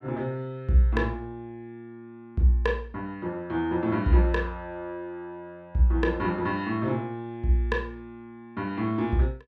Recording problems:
none

